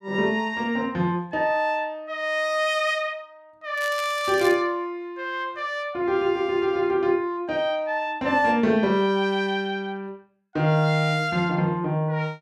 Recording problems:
crackle; at 4 s; loose cable, SNR 17 dB

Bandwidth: 14.5 kHz